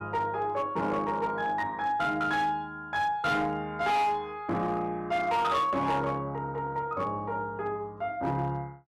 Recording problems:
distortion; hard clipping, signal-to-distortion ratio 12 dB

